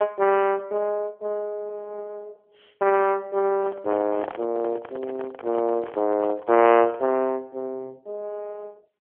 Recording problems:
telephone audio; 280 Hz to 3.1 kHz, AMR-NB
microphone handling noise; from 3.5 to 7 s; peak -6 dB vs average level

